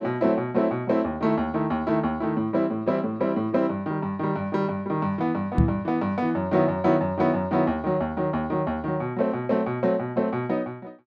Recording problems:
microphone thump; at 5.5 s; peak +8 dB vs average level

